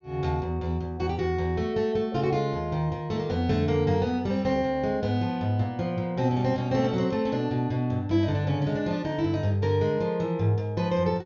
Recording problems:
treble cut off; nothing above 6.9 kHz

